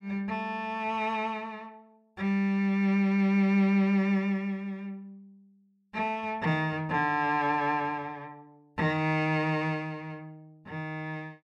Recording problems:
none

